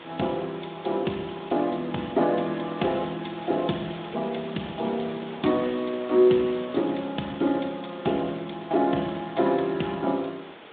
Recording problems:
phone line; 190 Hz to 3.7 kHz, Speex
hiss; SNR 16 dB

